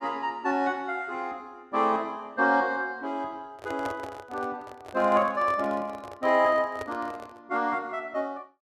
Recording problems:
microphone handling noise; from 3.5 to 7.5 s; peak -4 dB vs average level

